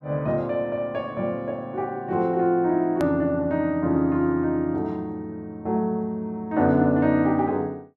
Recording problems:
click at an edit; at 3 s

